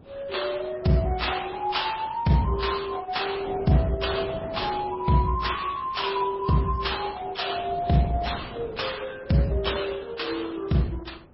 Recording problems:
lossy codec; Opus, then MP3, log-spectral distance 5 dB, nothing above 5.3 kHz
wind noise; below 530 Hz, SNR 19 dB

